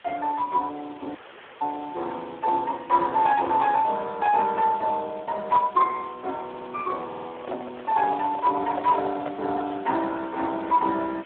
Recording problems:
telephone audio; 280 Hz to 3.6 kHz, Speex
hiss; SNR 24 dB
dropout; at 1 s
audio stuttering; at 6.5 s and at 7 s
handling noise; from 7 to 9.5 s; peak -5 dB vs average level

